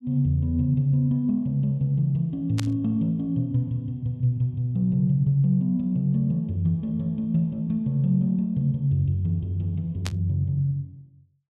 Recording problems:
burst of static; at 2.5 s and at 10 s; peak -4 dB vs average level

